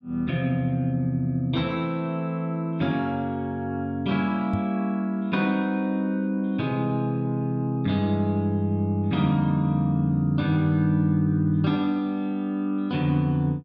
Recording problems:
microphone thump; at 4.5 s; peak -1 dB vs average level

